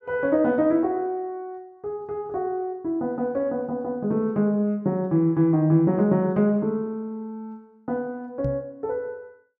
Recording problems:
microphone thump; at 8.5 s; peak -1 dB vs average level

